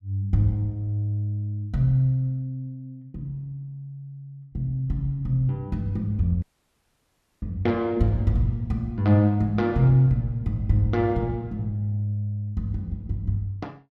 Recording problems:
audio cutting out; at 6.5 s for 1 s

